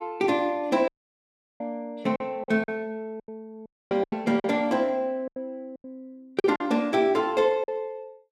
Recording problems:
lost packets; 8% of the sound replaced, filled with silence
audio cutting out; at 1 s for 0.5 s and at 3.5 s

